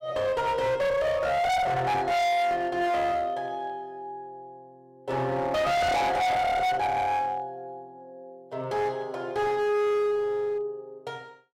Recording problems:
distortion; hard clipping, uneven, signal-to-distortion ratio 5 dB

